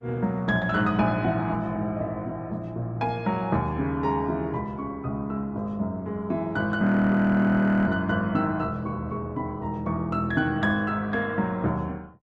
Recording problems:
lossy codec; Opus, log-spectral distance 2 dB
audio freezing; at 7 s for 1 s

